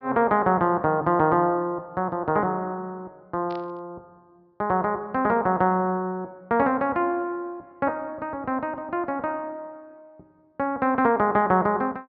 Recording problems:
low-pass filter; nothing above 5.5 kHz
burst of static; at 3.5 s; peak -17 dB vs average level

